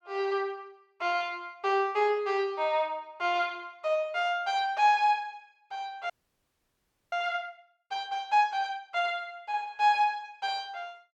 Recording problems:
audio freezing; at 6 s for 1 s

